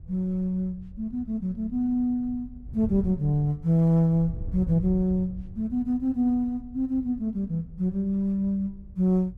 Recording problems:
wind on the microphone; below 100 Hz, SNR 15 dB

